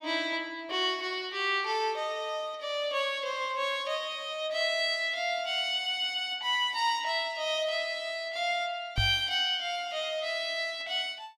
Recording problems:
microphone thump; at 9 s; peak +2 dB vs average level

